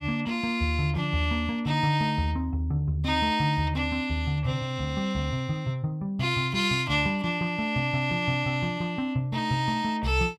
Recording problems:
none

